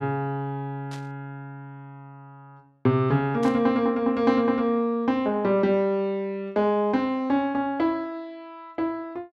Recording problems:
burst of static; at 1 s and at 3.5 s; peak -13 dB vs average level

